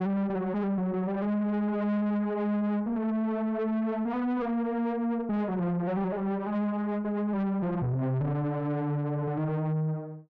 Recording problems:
distortion; soft clipping, signal-to-distortion ratio 8 dB

